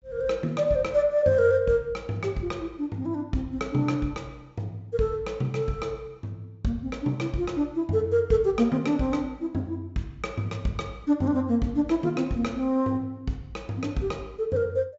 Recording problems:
treble cut off; nothing above 8 kHz

